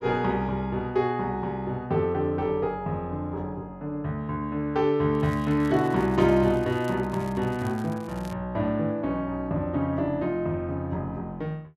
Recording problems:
crackle; from 5 to 8.5 s; loose cable, SNR 24 dB

